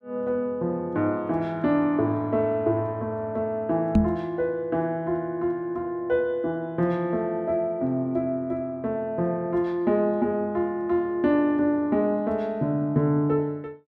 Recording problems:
microphone bump; at 4 s; peak +9 dB vs average level

